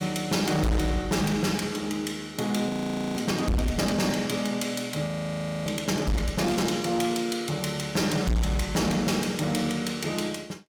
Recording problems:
distortion; hard clipping, signal-to-distortion ratio 7 dB
frozen audio; at 2.5 s and at 5 s for 0.5 s

